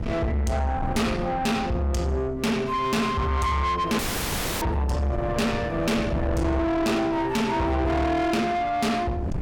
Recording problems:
distorted audio; soft clipping, signal-to-distortion ratio 7 dB
wind noise; below 420 Hz, SNR 10 dB
dropout; at 4 s for 0.5 s

